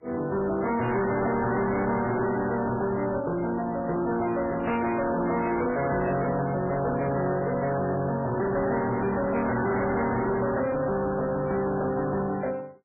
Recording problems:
lossy codec; MP3, then AAC, log-spectral distance 4 dB, nothing above 2.4 kHz
distortion; hard clipping, signal-to-distortion ratio 8 dB

